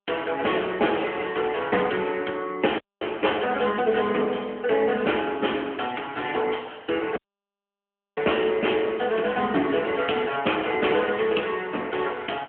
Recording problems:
telephone audio; 240 Hz to 3.3 kHz, AMR-NB
audio cutting out; at 3 s and at 7 s for 1 s

